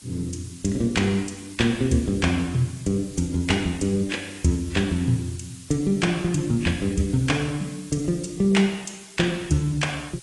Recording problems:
lossy codec; AAC, log-spectral distance 10 dB
background hiss; slope +2 dB per octave, SNR 19 dB

